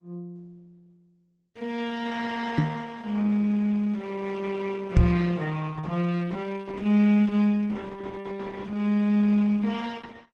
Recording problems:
lossy compression; Opus, log-spectral distance 3 dB
knock on the microphone; at 2.5 s and at 5 s; peak +9 dB vs average level

